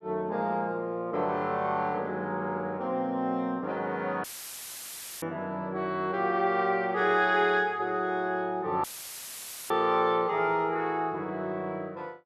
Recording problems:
audio cutting out; at 4 s for 1 s and at 9 s for 1 s; filled with static

